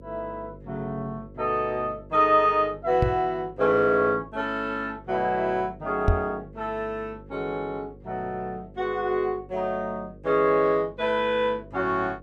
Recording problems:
hum; 50 Hz, harmonics up to 550 Hz, SNR 21 dB
knock on the microphone; at 3 s and at 6 s; peak +6 dB vs average level

